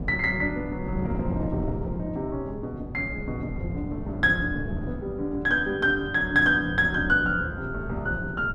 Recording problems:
wind noise; below 240 Hz, SNR 8 dB

